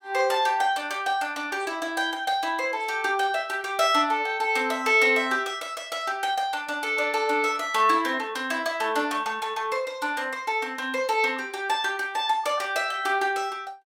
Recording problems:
none

